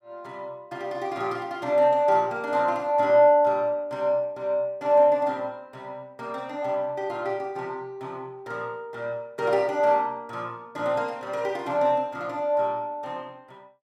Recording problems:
none

